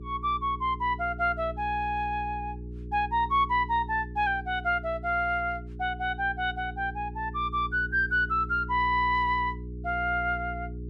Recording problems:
electrical hum; 60 Hz, harmonics up to 420 Hz, SNR 12 dB

